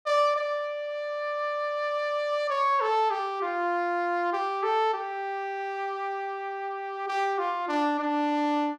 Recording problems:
none

